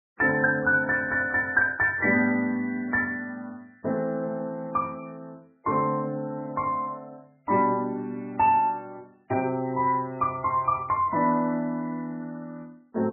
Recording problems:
codec artefacts; MP3, log-spectral distance 2 dB, nothing above 2.7 kHz

